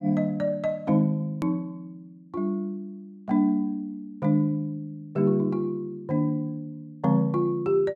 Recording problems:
hard cut with a click; at 1.5 s

